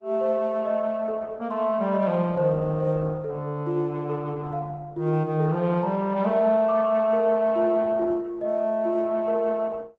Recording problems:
codec artefacts; Opus, log-spectral distance 2 dB

